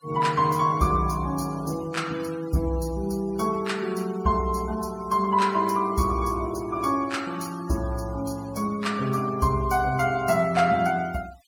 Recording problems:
denoising artefacts; signal-to-artefact ratio 20 dB

